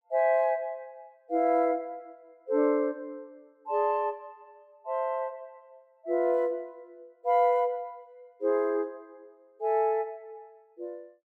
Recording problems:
none

